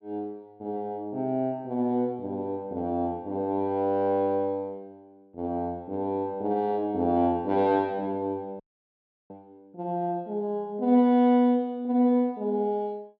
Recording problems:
audio cutting out; at 8.5 s for 0.5 s

